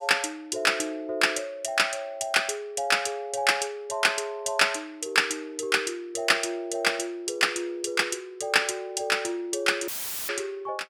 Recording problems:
audio cutting out; at 10 s; filled with static

